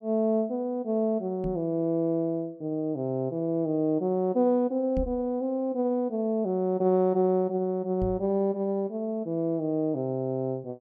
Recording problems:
microphone bump; at 1.5 s, at 5 s and at 8 s; peak -2 dB vs average level

